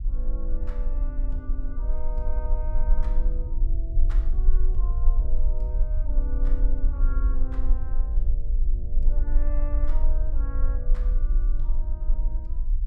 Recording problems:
rumble; below 40 Hz, strongest tone 22 Hz, SNR -15 dB

